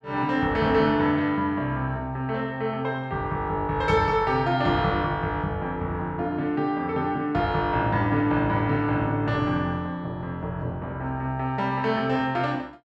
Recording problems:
none

